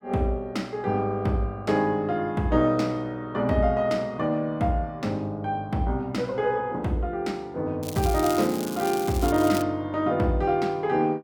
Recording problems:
crackle; from 8 to 9.5 s; loose cable, SNR 12 dB

